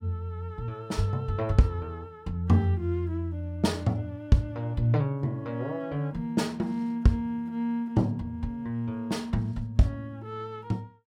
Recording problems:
none

